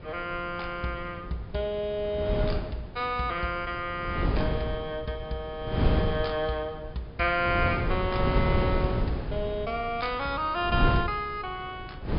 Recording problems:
treble cut off; nothing above 5 kHz
wind on the microphone; below 270 Hz, SNR 1 dB

